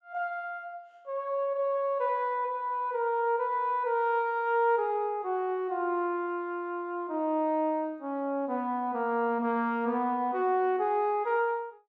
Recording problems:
none

